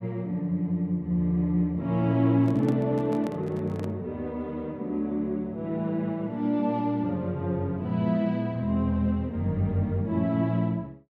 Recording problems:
handling noise; from 2.5 to 4 s; peak -7 dB vs average level

